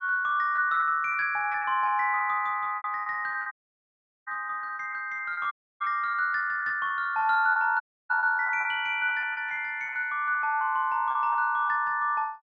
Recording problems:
packet loss; 13% of the sound replaced, filled with repeated pitch periods
dropout; at 3.5 s for 1 s, at 5.5 s and at 8 s

